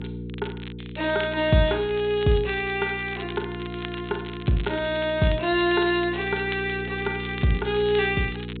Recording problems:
treble missing; nothing above 4 kHz
hum; 60 Hz, harmonics up to 480 Hz, SNR 11 dB
crackling; vinyl, SNR 17 dB

